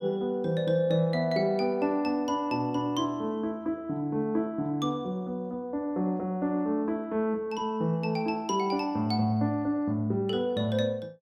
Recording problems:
none

